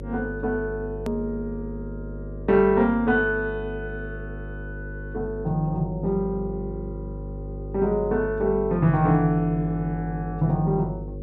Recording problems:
hum; 50 Hz, harmonics up to 550 Hz, SNR 11 dB
click at an edit; at 1 s

